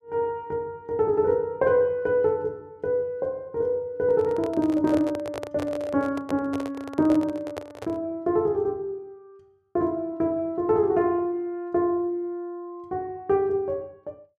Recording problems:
handling noise; from 4 to 8 s; peak -4 dB vs average level

